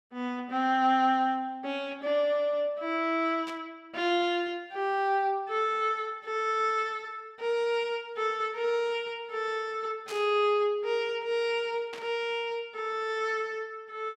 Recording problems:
static burst; at 3.5 s, at 10 s and at 12 s; peak -9 dB vs average level

